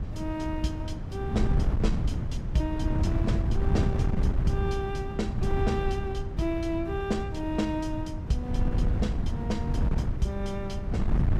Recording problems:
wind on the microphone; below 130 Hz, SNR -2 dB

